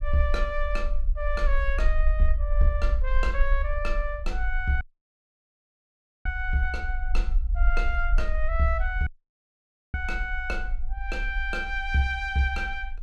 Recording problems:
low-frequency rumble; below 46 Hz, strongest tone 20 Hz, SNR 0 dB
dropout; at 5 s for 1.5 s and at 9 s for 1 s

